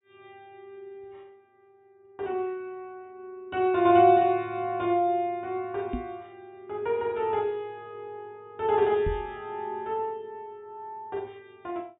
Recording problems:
treble cut off; nothing above 4 kHz
knock on the microphone; at 6 s and at 9 s; peak -2 dB vs average level

